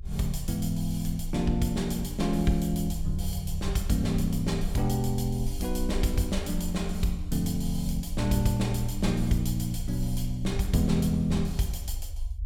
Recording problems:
low-frequency rumble; below 58 Hz, strongest tone 24 Hz, SNR 8 dB

